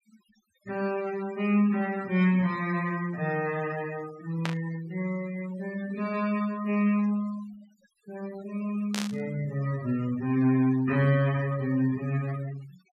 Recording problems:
denoising artefacts; signal-to-artefact ratio 19 dB
burst of static; at 4.5 s and at 9 s; peak 0 dB vs average level

